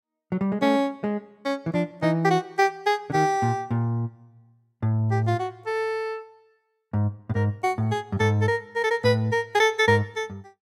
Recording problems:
none

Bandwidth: 16.5 kHz